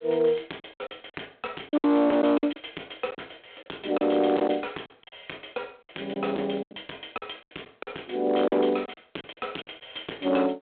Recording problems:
phone line; 260 Hz to 3.7 kHz, G.726
distortion; hard clipping, signal-to-distortion ratio 12 dB
lost packets; 12% of the sound replaced, filled with silence

